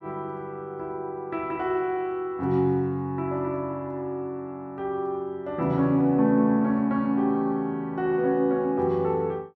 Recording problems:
none

